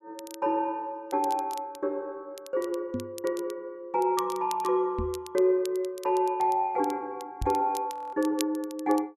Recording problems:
crackle; vinyl, SNR 17 dB
microphone thump; at 3 s, at 5 s and at 7.5 s; peak 0 dB vs average level
frozen audio; at 8 s

